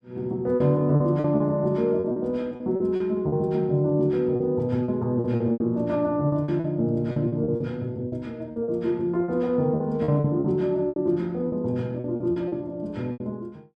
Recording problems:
lost packets; 12% of the sound replaced, filled with repeated pitch periods

